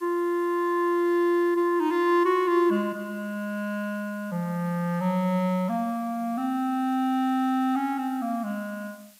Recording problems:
hiss; slope +3 dB per octave, SNR 27 dB

